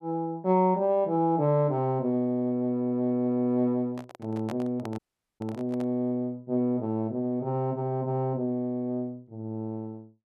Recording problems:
microphone handling noise; from 4 to 6 s; peak -6 dB vs average level
audio cutting out; at 5 s

